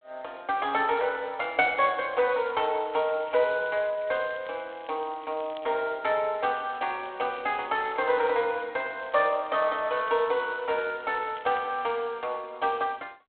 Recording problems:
telephone audio; 240 Hz to 3.5 kHz, G.726
crackle; from 2.5 to 6 s, from 6.5 to 8.5 s and from 9 to 12 s; loose cable, SNR 27 dB

